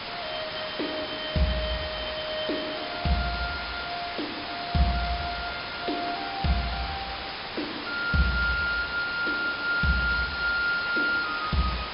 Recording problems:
low-pass filter; nothing above 5.5 kHz
hiss; SNR 5 dB

